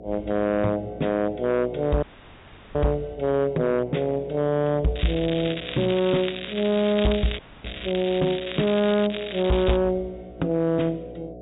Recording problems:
low-pass filter; nothing above 4 kHz
distorted audio; hard clipping, signal-to-distortion ratio 12 dB
electrical hum; 60 Hz, harmonics up to 720 Hz, SNR 18 dB
dropout; at 2 s for 0.5 s and at 7.5 s
crackling; from 5 to 10 s; loose cable, SNR 10 dB

